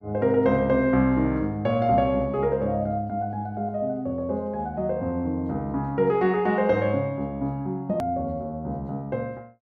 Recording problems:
hard cut with a click; at 8 s

